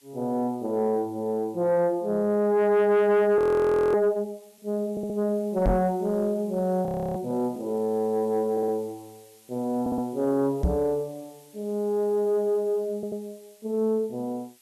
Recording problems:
distortion; soft clipping, signal-to-distortion ratio 12 dB
background hiss; slope +2 dB per octave, SNR 29 dB
frozen audio; at 3.5 s for 0.5 s and at 7 s
stutter; 4 times, first at 5 s
knock on the microphone; at 5.5 s and at 11 s; peak +4 dB vs average level

